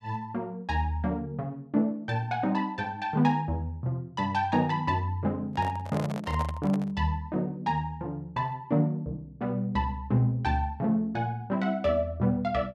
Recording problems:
microphone handling noise; from 5.5 to 7 s; peak -4 dB vs average level

